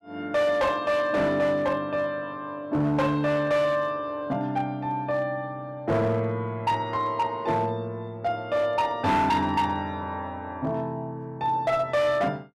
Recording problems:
distorted audio; hard clipping, signal-to-distortion ratio 12 dB

